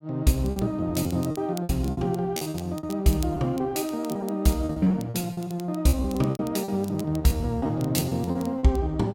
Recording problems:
crackle; vinyl, SNR 20 dB
lost packets; 16% of the sound replaced, filled with repeated pitch periods

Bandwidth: 16.5 kHz